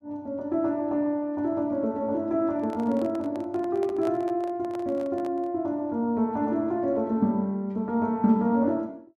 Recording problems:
microphone handling noise; from 2.5 to 5.5 s; peak -8 dB vs average level

